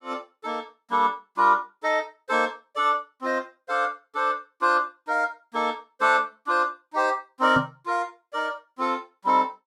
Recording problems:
knock on the microphone; at 7.5 s; peak +1 dB vs average level

